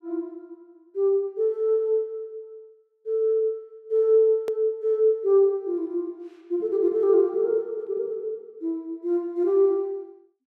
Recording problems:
click at an edit; at 4.5 s

